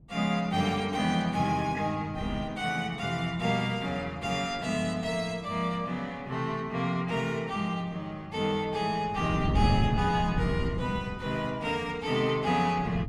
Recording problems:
wind noise; below 180 Hz, SNR 4 dB

